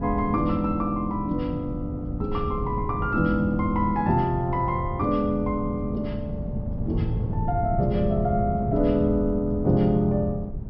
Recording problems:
treble cut off; nothing above 5.8 kHz
wind noise; below 170 Hz, SNR 6 dB

